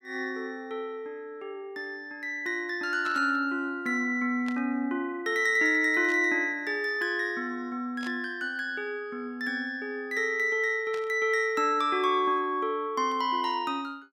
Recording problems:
static burst; 5 times, first at 3 s; peak -11 dB vs average level

